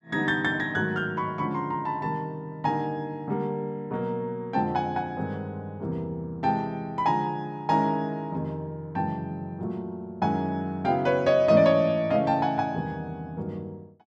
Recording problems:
none

